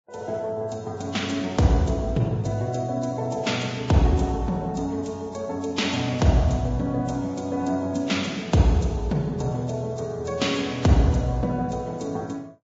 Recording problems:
codec artefacts; Vorbis, log-spectral distance 4 dB, nothing above 7.3 kHz

